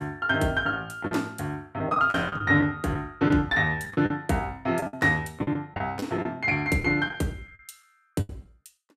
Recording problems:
lost packets; 10% of the sound replaced, filled with the last packet

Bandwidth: 14.5 kHz